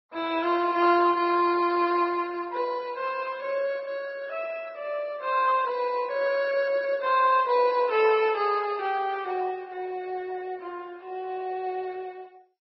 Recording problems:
lossy codec; MP2, then Vorbis, log-spectral distance 3 dB, nothing above 4.5 kHz

